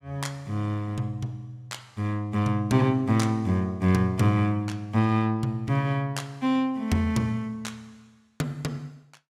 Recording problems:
none

